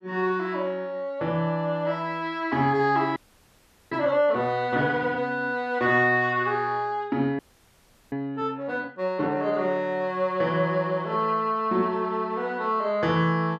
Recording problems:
audio freezing; at 3 s for 1 s and at 7.5 s for 0.5 s

